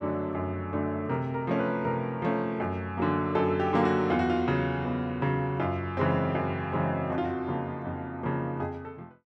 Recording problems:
none

